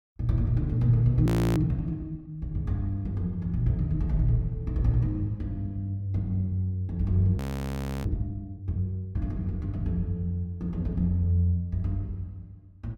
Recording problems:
frozen audio; at 1.5 s and at 7.5 s for 0.5 s

